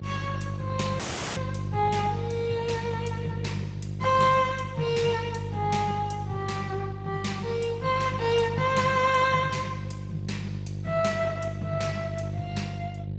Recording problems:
codec artefacts; Speex, log-spectral distance 4 dB, nothing above 7.8 kHz
hum; 50 Hz, harmonics up to 500 Hz, SNR 6 dB
audio cutting out; at 1 s

